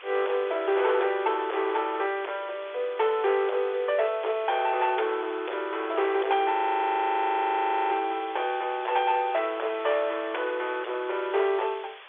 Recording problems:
phone line; 340 Hz to 3.6 kHz, G.711
distorted audio; hard clipping, signal-to-distortion ratio 9 dB
hiss; SNR 18 dB
frozen audio; at 6.5 s for 1.5 s

